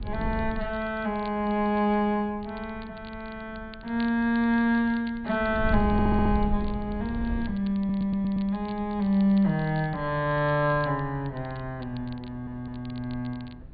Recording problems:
treble missing; nothing above 4.6 kHz
wind noise; below 98 Hz, SNR 11 dB
crackle; vinyl, SNR 27 dB
stutter; at 6 s, at 8 s and at 12 s

